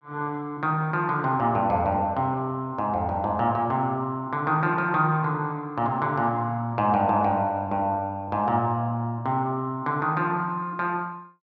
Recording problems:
none

